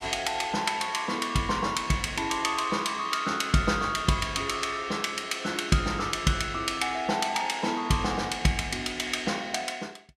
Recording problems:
none

